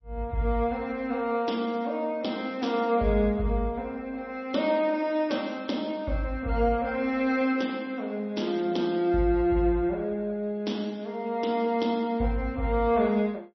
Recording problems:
lossy compression; MP3, log-spectral distance 2 dB, nothing above 5.8 kHz

